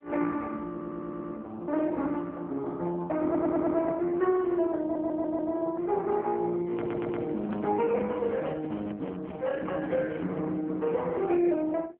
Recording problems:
phone line; 190 Hz to 2.8 kHz, AMR-NB
stutter; 4 times, first at 0.5 s
microphone handling noise; from 6.5 to 10 s; peak -6 dB vs average level

